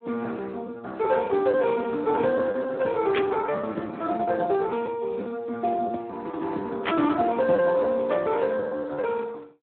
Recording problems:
telephone audio; 190 Hz to 3.6 kHz, Speex
packet loss; 7% of the sound replaced, filled with the last packet

